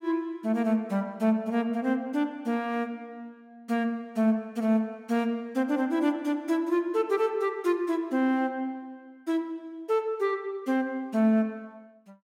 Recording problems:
none

